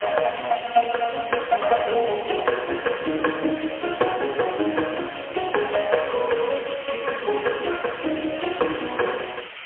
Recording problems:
phone line; 280 Hz to 3.2 kHz, AMR-NB, then MP3
hiss; SNR 13 dB

